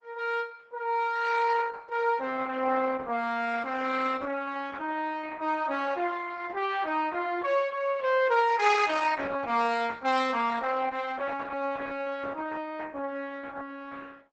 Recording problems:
lossy codec; Opus, log-spectral distance 4 dB, nothing above 8 kHz

